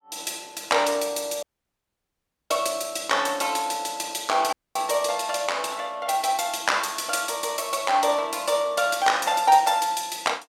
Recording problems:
dropout; at 1.5 s for 1 s and at 4.5 s

